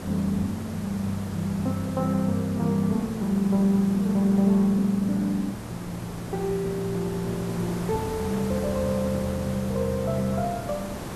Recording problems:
hiss; slope -6 dB per octave, SNR 11 dB

